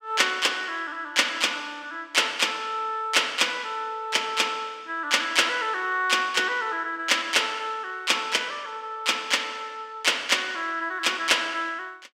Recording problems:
none

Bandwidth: 16 kHz